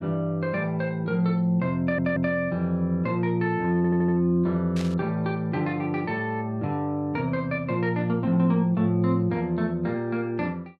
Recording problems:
audio stuttering; at 2 s and at 4 s
burst of static; at 5 s; peak -9 dB vs average level

